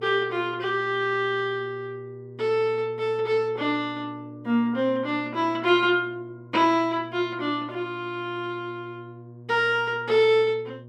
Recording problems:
electrical hum; 60 Hz, harmonics up to 600 Hz, SNR 20 dB

